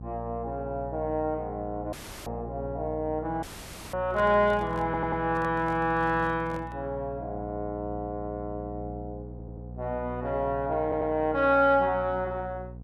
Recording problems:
mains hum; 60 Hz, harmonics up to 540 Hz, SNR 13 dB
dropout; at 2 s and at 3.5 s for 0.5 s
handling noise; from 4 to 7 s; peak -9 dB vs average level
audio stuttering; at 5 s, at 9.5 s and at 11 s

